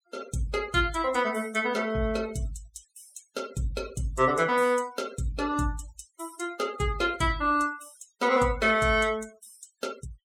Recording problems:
noise reduction artefacts; signal-to-artefact ratio 21 dB

